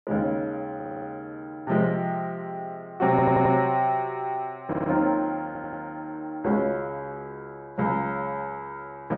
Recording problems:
stutter; 4 times, first at 1 s

